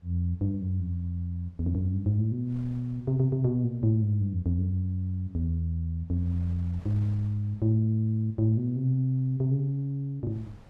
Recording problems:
wind noise; below 170 Hz, SNR 27 dB

